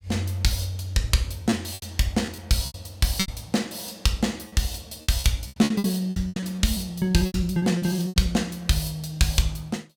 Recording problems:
lost packets; 11% of the sound replaced, filled with repeated pitch periods

